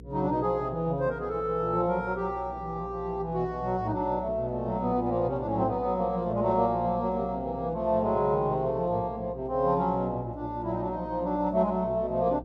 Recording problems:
hum; 60 Hz, harmonics up to 480 Hz, SNR 17 dB

